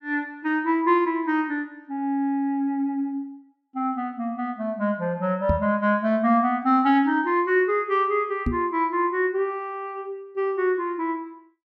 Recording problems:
knock on the microphone; at 5.5 s and at 8.5 s; peak +3 dB vs average level

